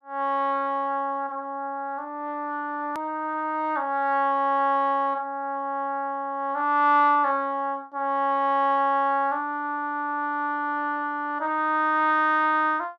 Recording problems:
hard cut with a click; at 3 s

